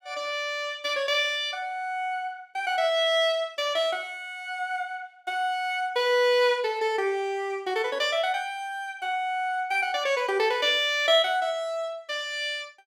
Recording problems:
none

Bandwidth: 16.5 kHz